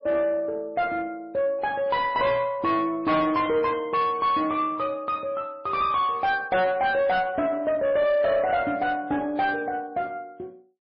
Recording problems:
codec artefacts; MP3, log-spectral distance 2 dB, nothing above 4.9 kHz
distortion; soft clipping, signal-to-distortion ratio 10 dB

